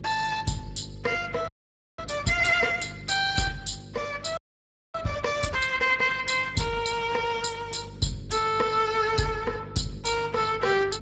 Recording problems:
lossy compression; Speex, log-spectral distance 6 dB, nothing above 7.3 kHz
hum; 50 Hz, harmonics up to 550 Hz, SNR 16 dB
audio freezing; at 1.5 s for 0.5 s and at 4.5 s for 0.5 s

